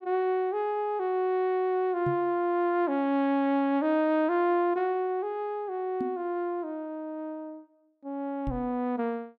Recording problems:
microphone thump; at 2 s, at 6 s and at 8.5 s; peak -2 dB vs average level

